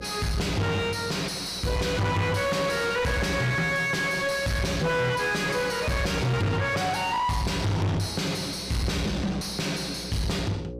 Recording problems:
distortion; soft clipping, signal-to-distortion ratio 5 dB
electrical hum; 60 Hz, harmonics up to 540 Hz, SNR 17 dB

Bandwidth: 15 kHz